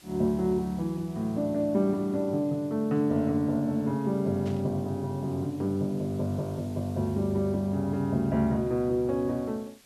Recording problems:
hiss; SNR 27 dB
burst of static; at 4.5 s; peak -15 dB vs average level

